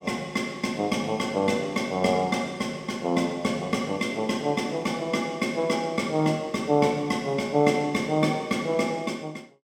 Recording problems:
none

